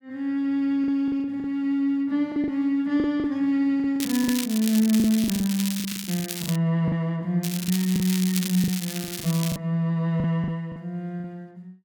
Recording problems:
packet loss; 10% of the sound replaced, filled with the last packet
crackling; from 4 to 6.5 s and from 7.5 to 9.5 s; loose cable, SNR 8 dB

